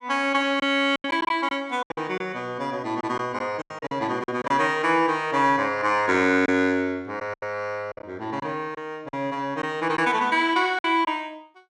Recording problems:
lost packets; 8% of the sound replaced, filled with silence

